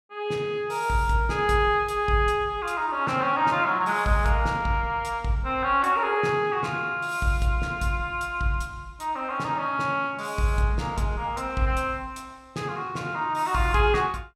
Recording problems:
none

